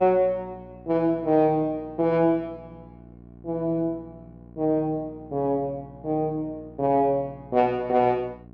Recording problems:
hum; 60 Hz, harmonics up to 1.1 kHz, SNR 22 dB

